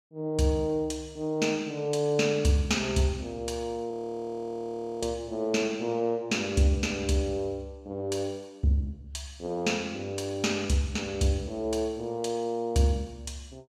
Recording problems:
frozen audio; at 4 s for 1 s

